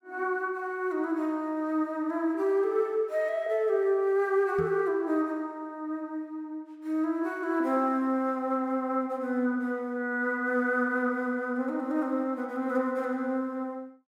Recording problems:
knock on the microphone; at 4.5 s; peak -5 dB vs average level

